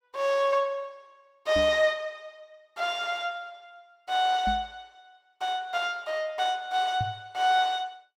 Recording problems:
microphone thump; at 1.5 s, at 4.5 s and at 7 s; peak -3 dB vs average level

